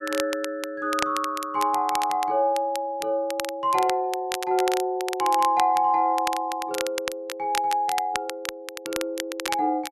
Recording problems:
crackle; vinyl, SNR 9 dB

